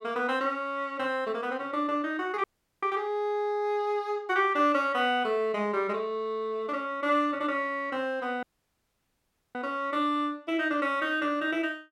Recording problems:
audio cutting out; at 2.5 s and at 8.5 s for 1 s

